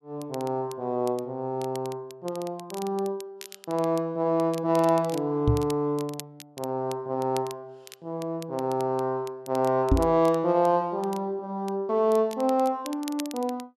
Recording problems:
crackling; vinyl, SNR 19 dB
microphone thump; at 5.5 s and at 10 s; peak +8 dB vs average level

